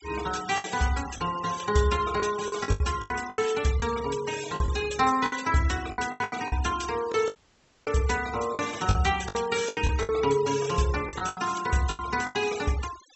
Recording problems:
low-pass filter; nothing above 7.9 kHz
noise reduction artefacts; signal-to-artefact ratio 13 dB
lost packets; 12% of the sound replaced, filled with the last packet
dropout; at 7.5 s for 0.5 s

